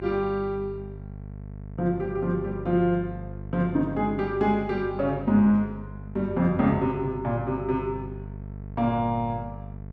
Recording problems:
electrical hum; 50 Hz, harmonics up to 700 Hz, SNR 13 dB

